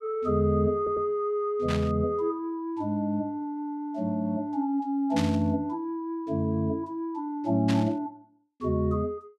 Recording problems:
audio stuttering; at 1 s
burst of static; at 1.5 s, at 5 s and at 7.5 s; peak -2 dB vs average level

